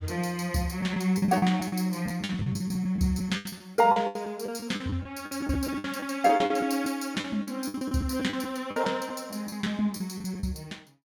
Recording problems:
packet loss; 15% of the sound replaced, filled with the last packet

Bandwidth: 18 kHz